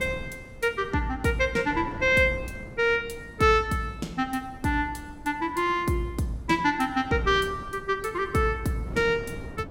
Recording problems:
wind on the microphone; below 310 Hz, SNR 17 dB

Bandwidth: 16.5 kHz